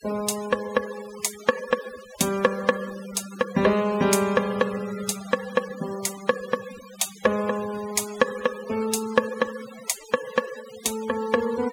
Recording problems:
denoising artefacts; signal-to-artefact ratio 15 dB

